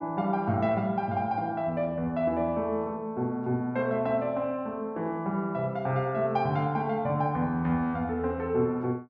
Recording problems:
none

